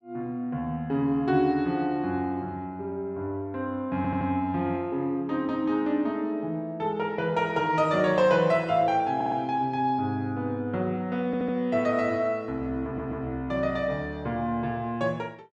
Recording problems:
stutter; 4 times, first at 4 s

